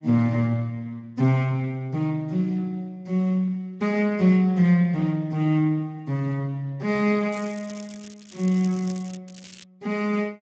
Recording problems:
codec artefacts; Speex, log-spectral distance 4 dB
crackling; from 7.5 to 9 s and at 9.5 s; loose cable, SNR 21 dB

